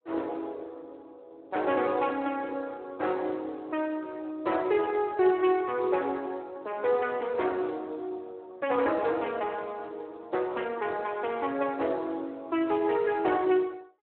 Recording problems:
telephone audio; 280 Hz to 3.3 kHz, Speex

